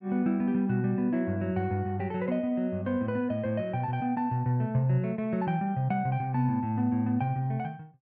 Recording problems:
none

